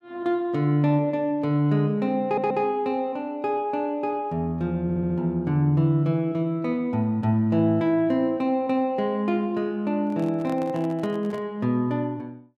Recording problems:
audio stuttering; at 2.5 s and at 5 s
microphone handling noise; from 10 to 11 s; peak -9 dB vs average level

